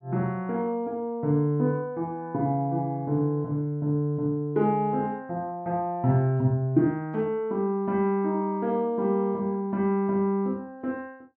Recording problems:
none

